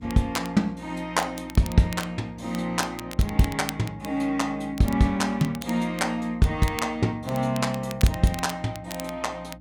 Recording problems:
hum; 60 Hz, harmonics up to 300 Hz, SNR 22 dB
crackling; vinyl, SNR 15 dB

